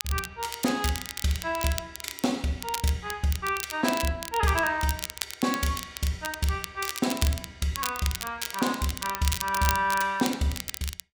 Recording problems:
crackling; vinyl, SNR 7 dB

